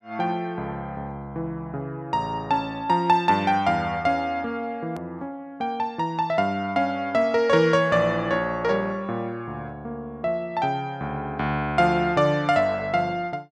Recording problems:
edit click; at 5 s

